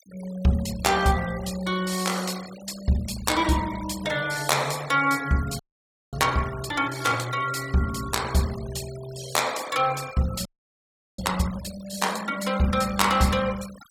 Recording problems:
denoising artefacts; signal-to-artefact ratio 16 dB
audio freezing; at 5.5 s for 0.5 s and at 10 s for 0.5 s

